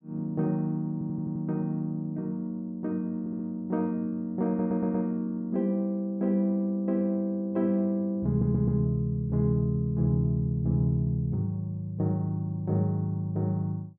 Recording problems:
audio stuttering; 4 times, first at 1 s

